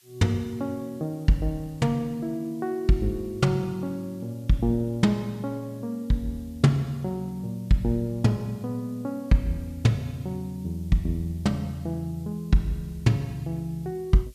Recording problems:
background hiss; slope +4 dB per octave, SNR 29 dB

